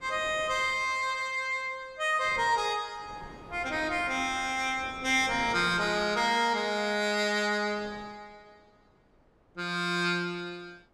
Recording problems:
wind noise; below 810 Hz, SNR 20 dB

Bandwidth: 15 kHz